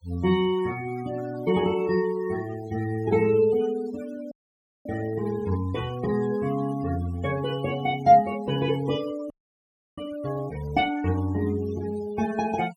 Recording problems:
noise reduction artefacts; signal-to-artefact ratio 17 dB
frozen audio; at 4.5 s for 0.5 s and at 9.5 s for 0.5 s

